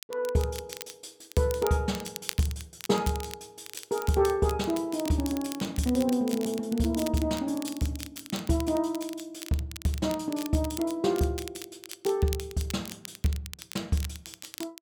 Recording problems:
crackling; vinyl, SNR 13 dB

